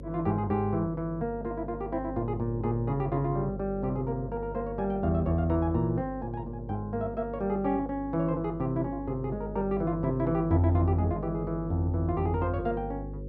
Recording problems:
hum; 50 Hz, harmonics up to 550 Hz, SNR 11 dB

